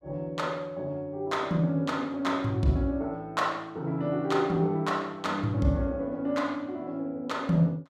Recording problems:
none

